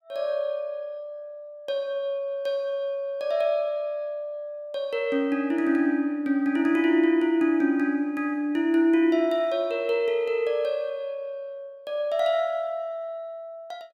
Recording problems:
none

